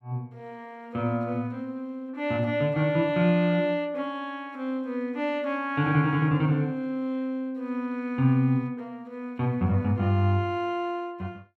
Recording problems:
none

